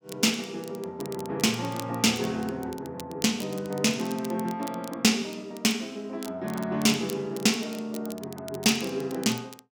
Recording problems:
crackling; vinyl, SNR 17 dB

